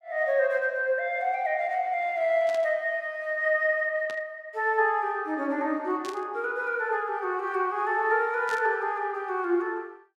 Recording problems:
burst of static; 4 times, first at 2.5 s; peak -11 dB vs average level

